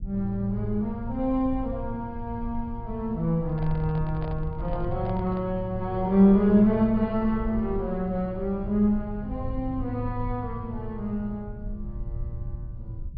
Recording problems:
treble missing; nothing above 5 kHz
rumble; below 78 Hz, SNR 12 dB
microphone handling noise; from 3.5 to 5.5 s; peak -12 dB vs average level

